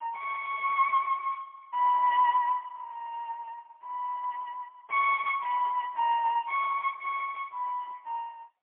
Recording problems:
phone line; 620 Hz to 2.9 kHz, AMR-NB, then MP3

